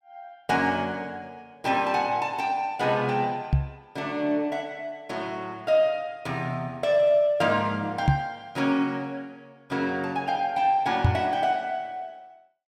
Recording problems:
microphone thump; at 3.5 s, at 8 s and at 11 s; peak +8 dB vs average level

